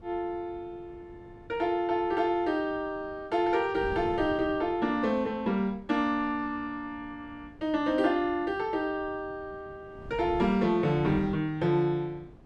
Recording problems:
wind on the microphone; below 280 Hz, SNR 19 dB

